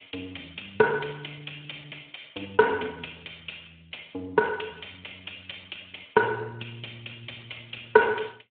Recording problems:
telephone audio; 190 Hz to 3.5 kHz, Speex

